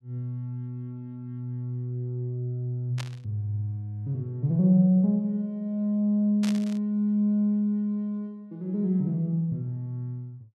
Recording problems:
burst of static; at 3 s and at 6.5 s; peak -6 dB vs average level

